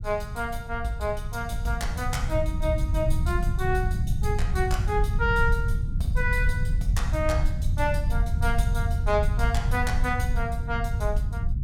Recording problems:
low-frequency rumble; below 92 Hz, SNR -1 dB

